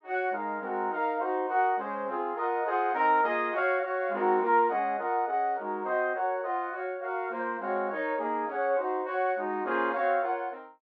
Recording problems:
none

